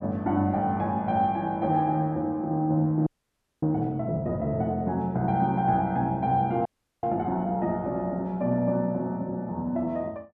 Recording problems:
audio freezing; at 3 s for 0.5 s and at 6.5 s

